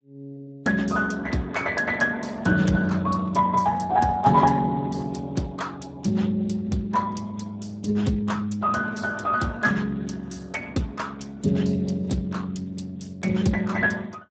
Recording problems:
lossy compression; Speex, log-spectral distance 3 dB, nothing above 7.8 kHz

